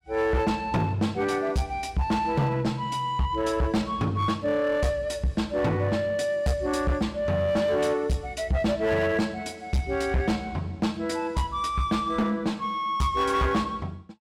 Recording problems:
distortion; hard clipping, uneven, signal-to-distortion ratio 10 dB

